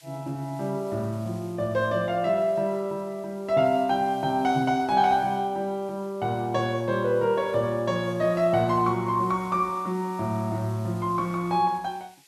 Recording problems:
background hiss; SNR 27 dB

